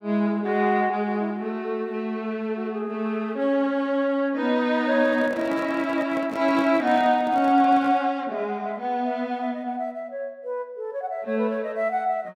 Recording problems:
handling noise; from 5 to 8 s; peak -7 dB vs average level

